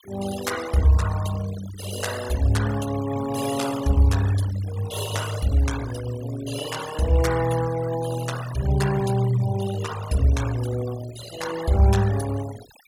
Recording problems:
noise reduction artefacts; signal-to-artefact ratio 13 dB

